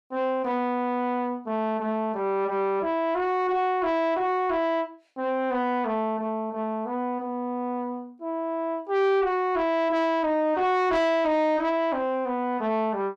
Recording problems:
distortion; soft clipping, signal-to-distortion ratio 11 dB

